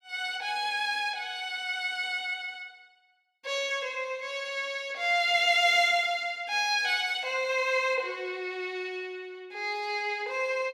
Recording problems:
none

